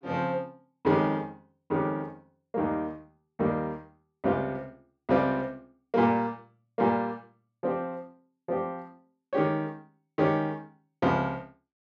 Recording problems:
none

